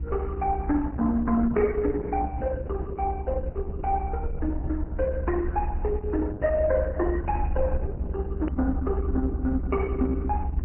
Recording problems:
low-pass filter; nothing above 2.5 kHz
codec artefacts; MP3, then Opus, log-spectral distance 2 dB
hum; 60 Hz, harmonics up to 360 Hz, SNR 11 dB
low-frequency rumble; below 72 Hz, strongest tone 70 Hz, SNR 5 dB
click at an edit; at 8.5 s

